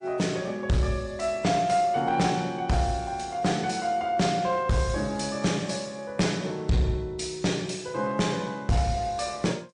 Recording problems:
lossy compression; MP3, log-spectral distance 2 dB, nothing above 9.2 kHz
distortion; hard clipping, uneven, signal-to-distortion ratio 11 dB

